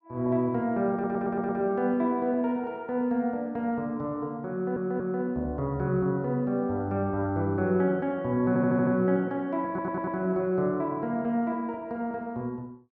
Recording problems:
stutter; 4 times, first at 1 s

